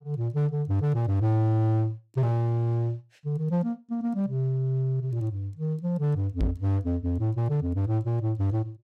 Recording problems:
distortion; hard clipping, uneven, signal-to-distortion ratio 12 dB
microphone thump; at 6.5 s; peak +5 dB vs average level

